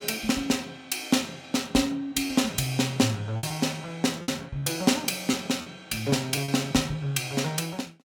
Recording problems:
lost packets; 4% of the sound replaced, filled with repeated pitch periods

